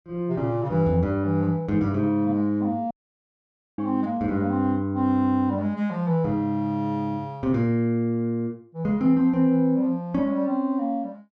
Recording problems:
audio cutting out; at 3 s for 1 s

